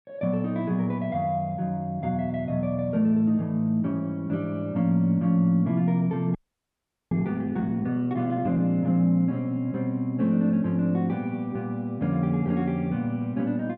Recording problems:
audio freezing; at 6.5 s for 1 s

